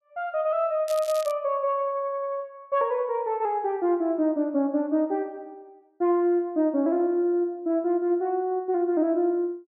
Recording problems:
crackle; at 1 s; loose cable, SNR 17 dB

